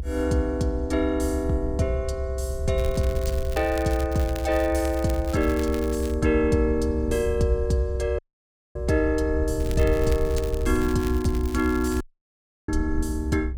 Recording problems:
low-frequency rumble; below 74 Hz, strongest tone 64 Hz, SNR 5 dB
crackling; from 3 to 6 s and from 9.5 to 12 s; loose cable, SNR 17 dB
audio cutting out; at 8 s for 0.5 s and at 12 s for 0.5 s

